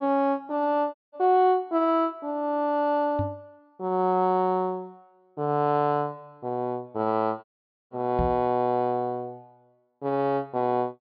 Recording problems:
treble missing; nothing above 5.5 kHz
dropout; at 1 s and at 7.5 s
knock on the microphone; at 3 s and at 8 s; peak 0 dB vs average level

